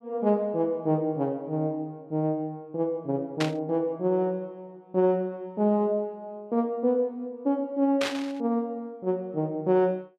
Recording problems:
static burst; at 3.5 s and at 8 s; peak +1 dB vs average level

